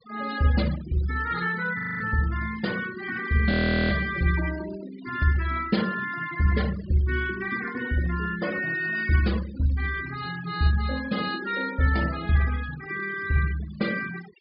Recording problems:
treble missing; nothing above 5.5 kHz
denoising artefacts; signal-to-artefact ratio 14 dB
audio freezing; at 2 s and at 3.5 s

